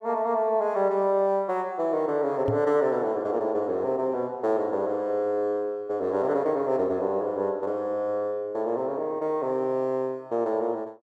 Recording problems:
microphone bump; at 2.5 s; peak 0 dB vs average level

